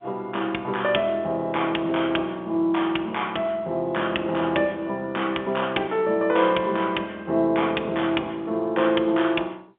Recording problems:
phone line; 280 Hz to 3.5 kHz, G.711

